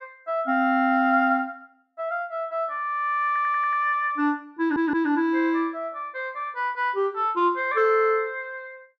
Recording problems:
stutter; at 3.5 s and at 4.5 s

